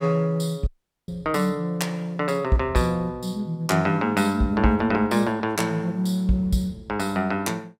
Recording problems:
audio cutting out; at 0.5 s

